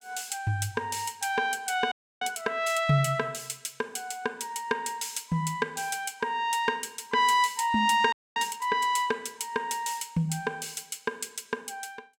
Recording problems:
frozen audio; at 2 s and at 8 s

